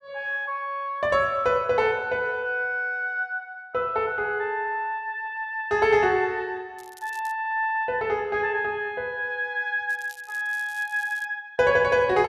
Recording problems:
crackle; at 7 s and from 10 to 11 s; loose cable, SNR 23 dB

